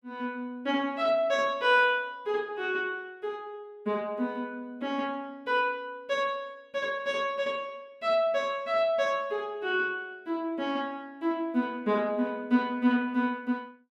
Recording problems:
none

